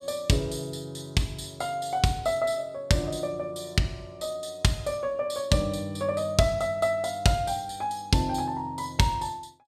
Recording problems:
none

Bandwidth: 14.5 kHz